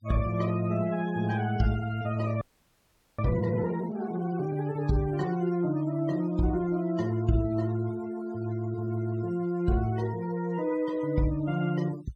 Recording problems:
noise reduction artefacts; signal-to-artefact ratio 21 dB
audio freezing; at 2.5 s for 1 s

